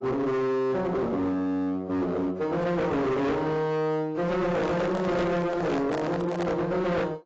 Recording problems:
codec artefacts; AAC, log-spectral distance 2 dB, nothing above 7.3 kHz
distorted audio; hard clipping, signal-to-distortion ratio 7 dB
handling noise; from 4.5 to 6.5 s; peak -1 dB vs average level

